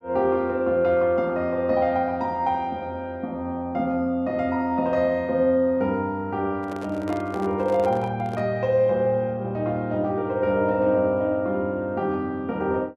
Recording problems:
microphone handling noise; from 6.5 to 8.5 s; peak -7 dB vs average level

